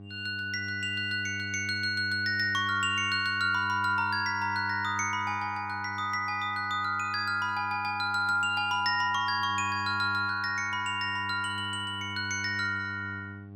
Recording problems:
hum; 50 Hz, harmonics up to 800 Hz, SNR 15 dB

